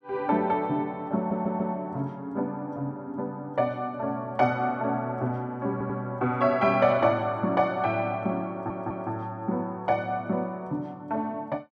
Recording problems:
audio stuttering; at 1 s, at 5.5 s and at 8.5 s

